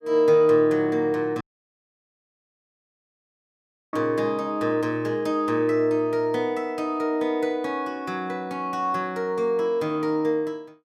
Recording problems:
audio cutting out; at 1.5 s for 2.5 s

